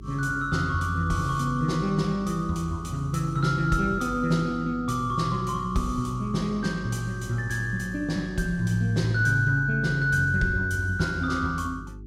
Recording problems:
hum; 50 Hz, harmonics up to 400 Hz, SNR 16 dB

